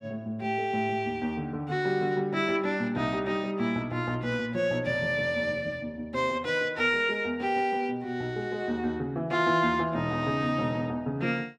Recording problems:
none

